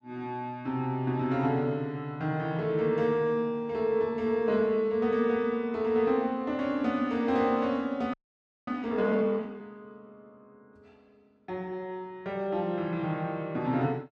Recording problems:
audio freezing; at 8 s for 0.5 s

